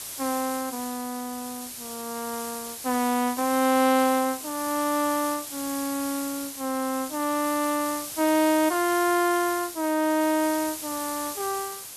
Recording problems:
background hiss; slope 0 dB per octave, SNR 8 dB

